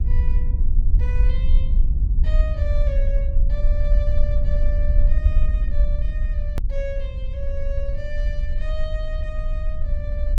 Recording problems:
low-frequency rumble; below 54 Hz, SNR -13 dB
click at an edit; at 6.5 s

